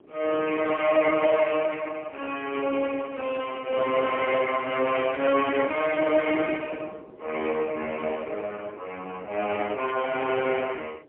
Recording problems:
telephone audio; 300 Hz to 3.3 kHz, AMR-NB, then MP3
wind noise; below 490 Hz, SNR 19 dB

